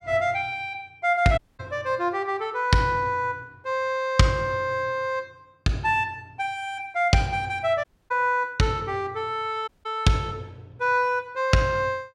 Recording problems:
audio cutting out; at 1.5 s, at 8 s and at 9.5 s

